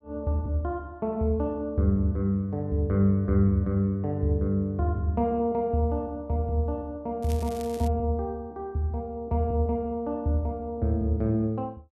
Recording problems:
crackling; at 7 s; loose cable, SNR 20 dB

